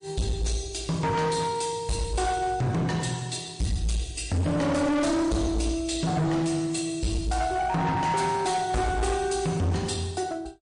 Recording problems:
codec artefacts; MP3, log-spectral distance 5 dB, nothing above 8.5 kHz
distorted audio; hard clipping, uneven, signal-to-distortion ratio 7 dB

